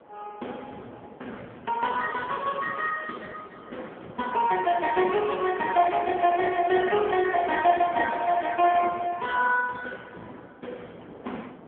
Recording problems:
phone line; 240 Hz to 3 kHz, AMR-NB
wind on the microphone; below 790 Hz, SNR 22 dB

